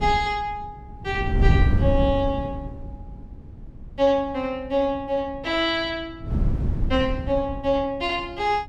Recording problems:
wind noise; below 130 Hz, SNR 1 dB

